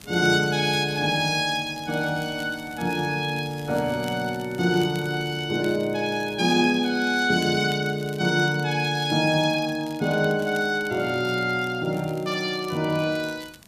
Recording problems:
hiss; slope -4 dB per octave, SNR 27 dB
crackle; vinyl, SNR 23 dB

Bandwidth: 14.5 kHz